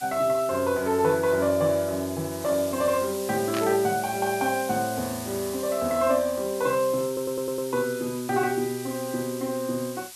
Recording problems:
background hiss; slope +3 dB per octave, SNR 12 dB
burst of static; at 3.5 s; peak -3 dB vs average level
stutter; at 7 s

